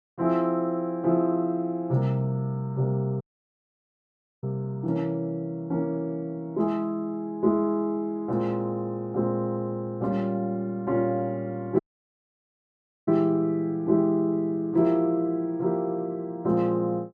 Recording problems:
dropout; at 3 s for 1 s and at 12 s for 1.5 s

